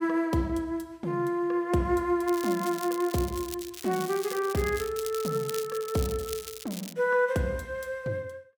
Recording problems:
crackle; from 2.5 to 7 s; loose cable, SNR 11 dB

